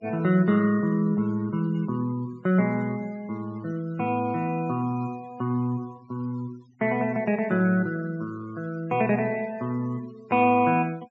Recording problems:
treble missing; nothing above 7.5 kHz
denoising artefacts; signal-to-artefact ratio 26 dB

